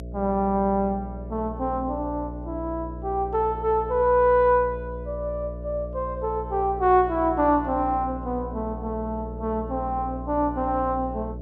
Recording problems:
hum; 60 Hz, harmonics up to 660 Hz, SNR 11 dB

